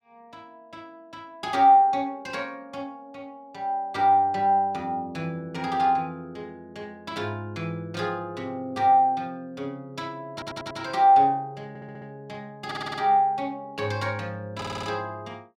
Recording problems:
stutter; 4 times, first at 10 s

